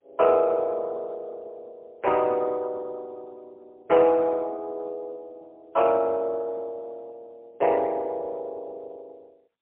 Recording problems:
telephone audio; 320 Hz to 3.4 kHz, AMR-NB, then MP3

